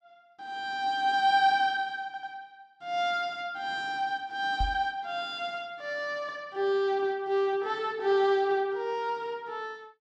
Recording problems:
stutter; at 2 s
microphone bump; at 4.5 s; peak 0 dB vs average level

